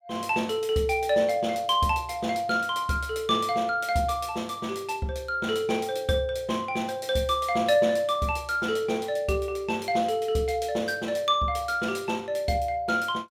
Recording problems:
none

